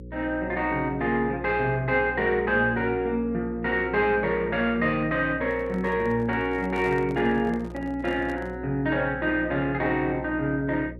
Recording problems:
electrical hum; 60 Hz, harmonics up to 540 Hz, SNR 15 dB
handling noise; from 5.5 to 8.5 s; peak -10 dB vs average level

